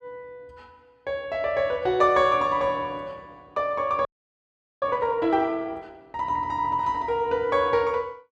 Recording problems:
frozen audio; at 4 s for 1 s

